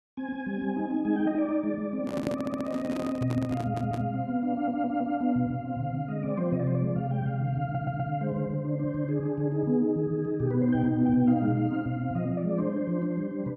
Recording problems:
handling noise; from 2 to 4 s; peak +1 dB vs average level
audio stuttering; 4 times, first at 2.5 s

